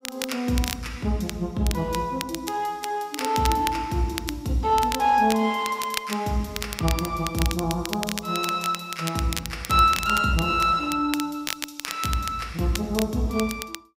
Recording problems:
crackling; vinyl, SNR 9 dB

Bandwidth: 15.5 kHz